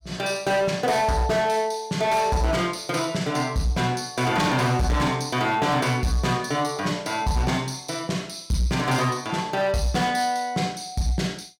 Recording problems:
distorted audio; hard clipping, signal-to-distortion ratio 12 dB

